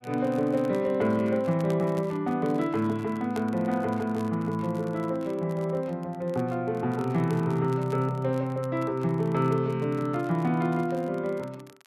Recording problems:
crackling; vinyl, SNR 26 dB

